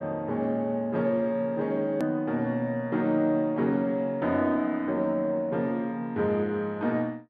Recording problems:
click at an edit; at 2 s

